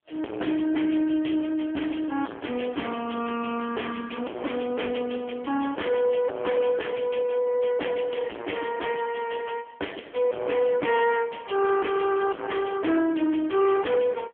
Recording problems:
phone line; 220 Hz to 3.2 kHz, AMR-NB
distortion; soft clipping, signal-to-distortion ratio 4 dB

